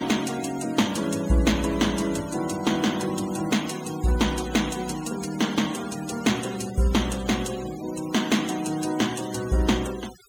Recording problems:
noise reduction artefacts; signal-to-artefact ratio 14 dB

